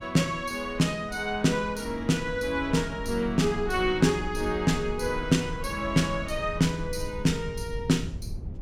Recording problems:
low-frequency rumble; below 110 Hz, SNR 12 dB

